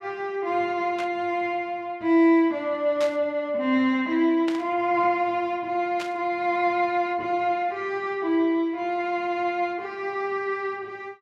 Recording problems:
burst of static; 4 times, first at 1 s; peak -6 dB vs average level

